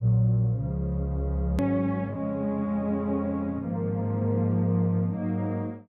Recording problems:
edit click; at 1.5 s

